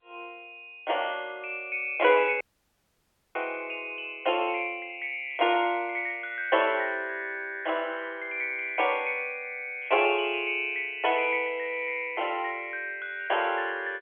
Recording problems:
telephone audio; 300 Hz to 3.3 kHz, G.711
dropout; at 2.5 s for 1 s

